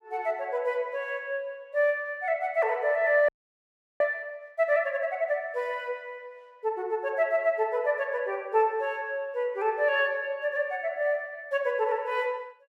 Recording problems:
audio freezing; at 3.5 s for 0.5 s

